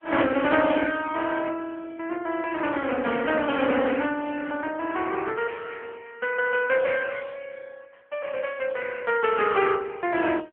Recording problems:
phone line; 280 Hz to 3.2 kHz, AMR-NB

